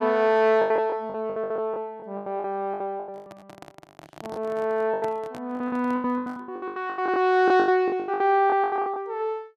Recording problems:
packet loss; 22% of the sound replaced, filled with the last packet
microphone handling noise; from 3 to 6.5 s; peak -10 dB vs average level

